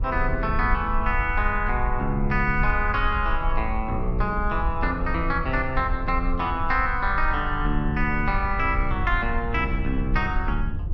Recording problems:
low-frequency rumble; below 56 Hz, SNR 5 dB

